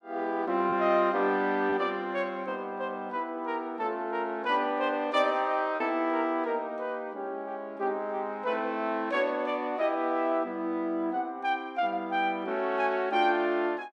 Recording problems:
lost packets; 0.6% of the sound replaced, filled with repeated pitch periods

